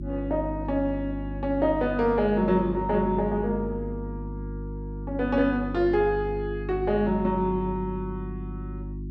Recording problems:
electrical hum; 50 Hz, harmonics up to 350 Hz, SNR 9 dB

